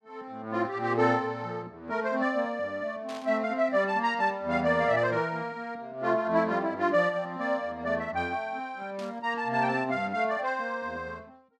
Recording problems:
static burst; at 3 s and at 9 s; peak -12 dB vs average level

